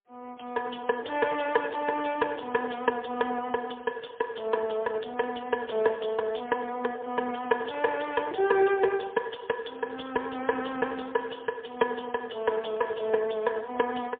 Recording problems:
telephone audio; 300 Hz to 3.5 kHz, AMR-NB, then MP3

